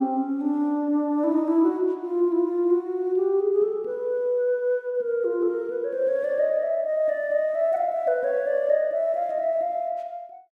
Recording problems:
none

